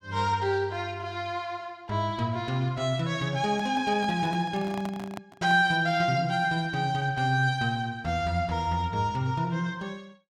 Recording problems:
handling noise; from 3.5 to 6 s; peak -7 dB vs average level

